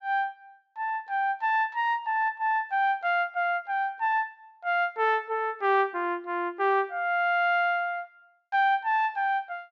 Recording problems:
treble missing; nothing above 8 kHz

